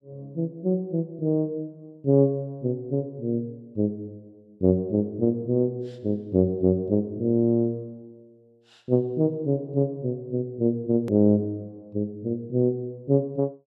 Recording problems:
click at an edit; at 11 s

